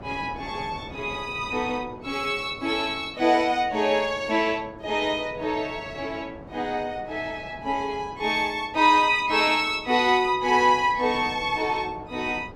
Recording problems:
wind on the microphone; below 640 Hz, SNR 19 dB

